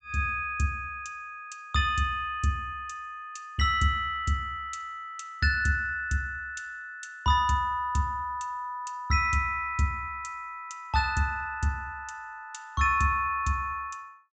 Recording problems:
treble cut off; nothing above 8 kHz

